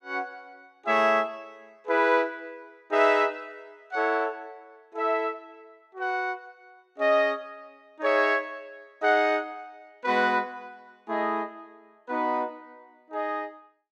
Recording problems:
none

